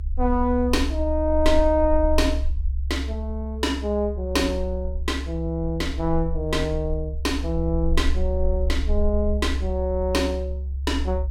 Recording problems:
rumble; below 68 Hz, SNR 3 dB

